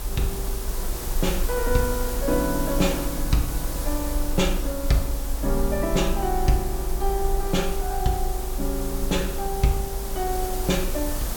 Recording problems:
hiss; SNR 6 dB
low-frequency rumble; below 50 Hz, strongest tone 26 Hz, SNR 5 dB

